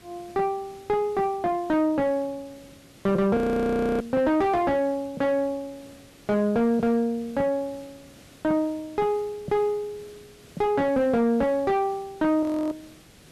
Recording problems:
distortion; soft clipping, signal-to-distortion ratio 7 dB
hiss; SNR 25 dB
frozen audio; at 3.5 s for 0.5 s and at 12 s

